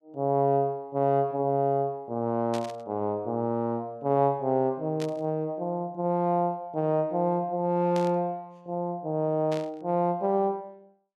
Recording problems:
static burst; 4 times, first at 2.5 s; peak -8 dB vs average level

